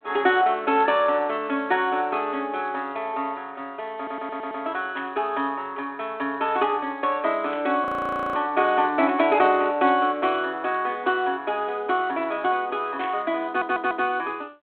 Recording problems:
phone line; 220 Hz to 3.5 kHz, G.726
stutter; at 4 s and at 13 s
static burst; at 5 s, at 7.5 s and at 13 s; peak -9 dB vs average level
frozen audio; at 8 s for 0.5 s

